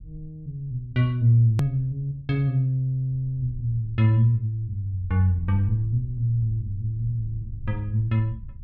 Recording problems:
low-frequency rumble; below 88 Hz, SNR 18 dB
edit click; at 1.5 s

